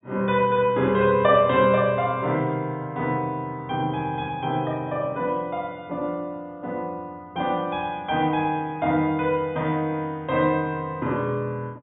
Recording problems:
treble cut off; nothing above 4 kHz

